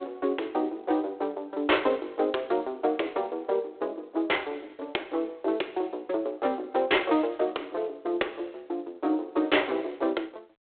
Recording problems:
phone line; 280 Hz to 3.7 kHz, G.726

